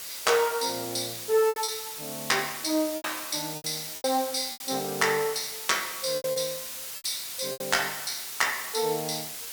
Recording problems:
background hiss; slope +2 dB per octave, SNR 7 dB
packet loss; 7% of the sound replaced, filled with repeated pitch periods

